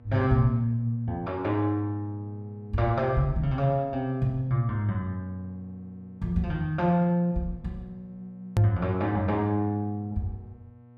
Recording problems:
electrical hum; 60 Hz, harmonics up to 1.1 kHz, SNR 25 dB
hard cut with a click; at 8.5 s

